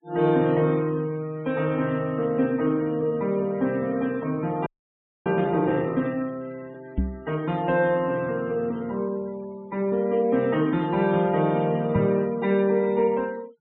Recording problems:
low-pass filter; nothing above 3.9 kHz
denoising artefacts; signal-to-artefact ratio 26 dB
audio freezing; at 4.5 s for 0.5 s
microphone bump; at 7 s and at 12 s; peak +3 dB vs average level

